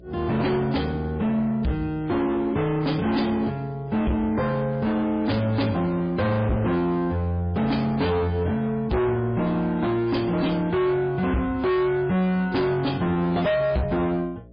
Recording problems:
lossy codec; MP3, log-spectral distance 2 dB, nothing above 4.6 kHz
distortion; hard clipping, signal-to-distortion ratio 7 dB
electrical hum; 60 Hz, harmonics up to 660 Hz, SNR 24 dB

